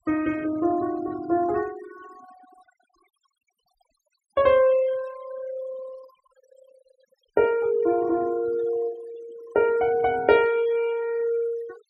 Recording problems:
noise reduction artefacts; signal-to-artefact ratio 21 dB

